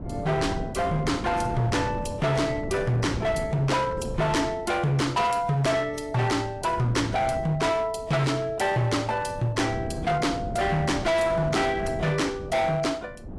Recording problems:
lossy compression; AAC, log-spectral distance 2 dB, nothing above 11.6 kHz
distorted audio; hard clipping, uneven, signal-to-distortion ratio 8 dB
wind on the microphone; below 320 Hz, SNR 10 dB

